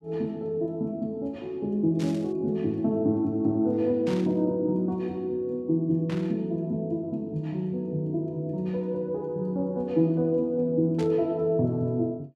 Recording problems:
static burst; 4 times, first at 2 s; peak -10 dB vs average level

